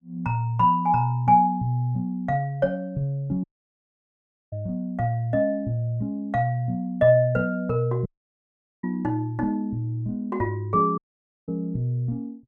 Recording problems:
audio cutting out; at 3.5 s for 1 s, at 8 s for 1 s and at 11 s for 0.5 s

